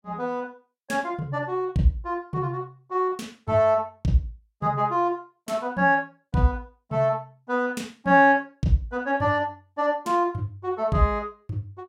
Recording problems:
none

